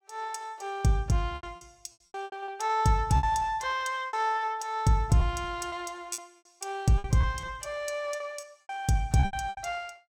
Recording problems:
lost packets; 12% of the sound replaced, filled with repeated pitch periods

